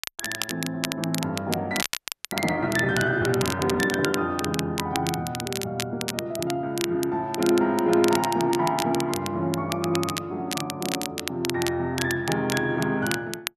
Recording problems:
crackling; vinyl, SNR 7 dB
frozen audio; at 2 s

